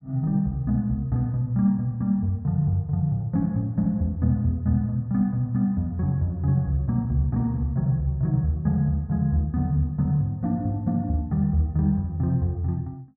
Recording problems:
none

